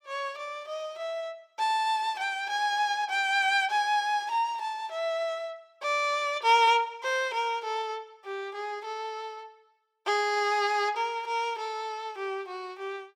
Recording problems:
none

